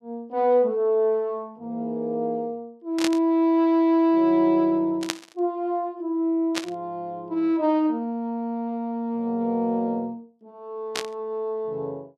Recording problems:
static burst; 4 times, first at 3 s; peak +2 dB vs average level

